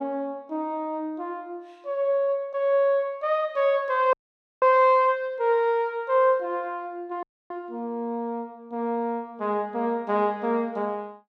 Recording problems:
audio cutting out; at 4 s and at 7 s

